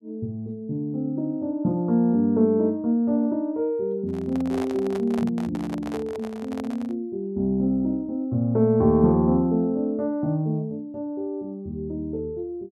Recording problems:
handling noise; from 4 to 7 s; peak -7 dB vs average level

